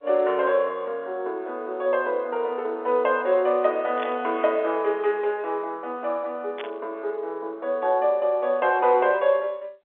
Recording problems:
telephone audio; 300 Hz to 3.8 kHz, G.711
static burst; at 4 s and at 6.5 s; peak -7 dB vs average level

